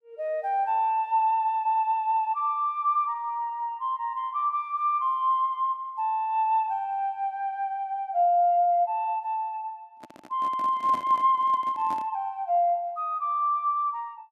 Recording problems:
handling noise; from 10 to 12 s; peak -8 dB vs average level

